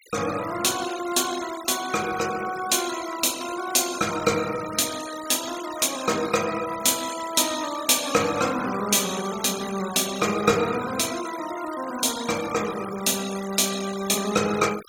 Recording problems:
denoising artefacts; signal-to-artefact ratio 13 dB

